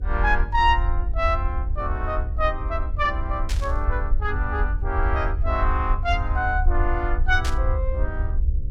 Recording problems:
electrical hum; 60 Hz, harmonics up to 540 Hz, SNR 17 dB
rumble; below 68 Hz, SNR 1 dB
burst of static; at 3.5 s and at 7.5 s; peak -2 dB vs average level

